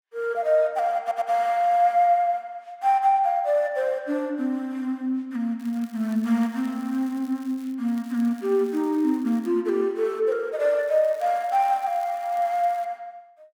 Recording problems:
audio stuttering; at 1 s
crackling; from 5.5 to 8 s, from 8 to 9.5 s and from 11 to 13 s; loose cable, SNR 28 dB

